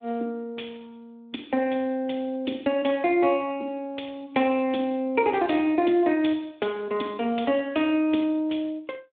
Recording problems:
phone line; 240 Hz to 3.6 kHz, Speex

